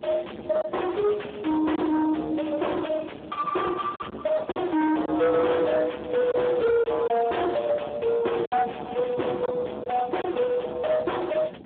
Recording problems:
telephone audio; 320 Hz to 3.4 kHz, Speex
distortion; soft clipping, signal-to-distortion ratio 6 dB
wind on the microphone; below 800 Hz, SNR 18 dB
packet loss; 3% of the sound replaced, filled with silence
crackling; at 1 s, from 5 to 7.5 s and from 8.5 to 9.5 s; loose cable, SNR 27 dB

